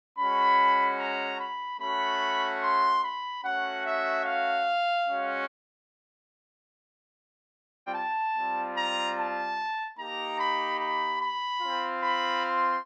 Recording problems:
audio cutting out; at 5.5 s for 2.5 s

